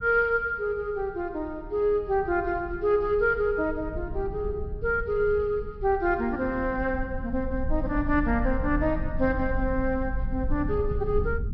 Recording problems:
treble missing; nothing above 5.5 kHz
rumble; below 70 Hz, SNR 8 dB

